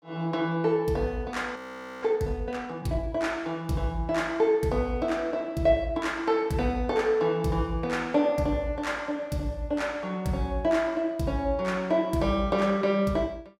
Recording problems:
audio freezing; at 1.5 s

